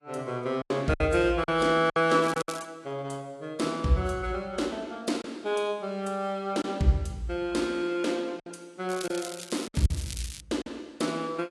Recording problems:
lossy compression; AAC, log-spectral distance 3 dB, nothing above 11 kHz
lost packets; 5% of the sound replaced, filled with silence
crackle; at 2 s and from 9 to 10 s; loose cable, SNR 12 dB

